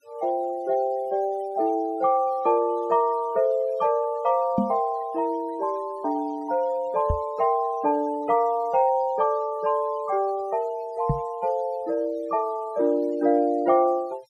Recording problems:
denoising artefacts; signal-to-artefact ratio 27 dB
microphone bump; at 4.5 s, at 7 s and at 11 s; peak +3 dB vs average level

